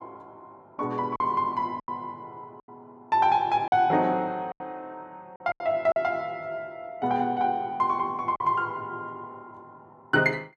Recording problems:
lost packets; 5% of the sound replaced, filled with silence

